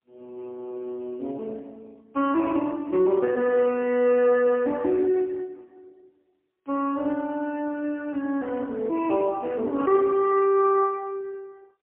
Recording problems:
phone line; 260 Hz to 3.4 kHz, AMR-NB, then MP3

